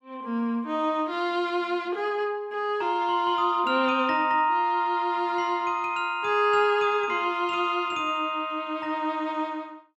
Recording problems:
none

